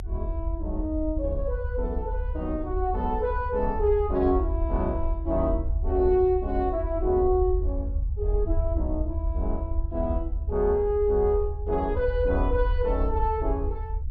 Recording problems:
low-frequency rumble; below 74 Hz, SNR 3 dB

